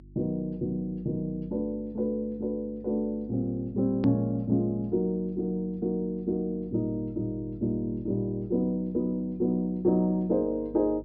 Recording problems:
low-pass filter; nothing above 5.5 kHz
electrical hum; 50 Hz, harmonics up to 350 Hz, SNR 21 dB
edit click; at 4 s

